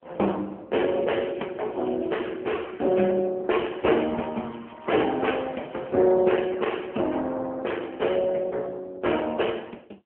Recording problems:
phone line; 240 Hz to 3.2 kHz, AMR-NB
crackle; from 1 to 2.5 s and from 3.5 to 6 s; loose cable, SNR 28 dB

